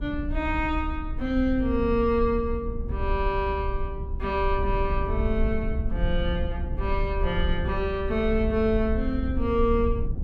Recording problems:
rumble; below 66 Hz, SNR 4 dB

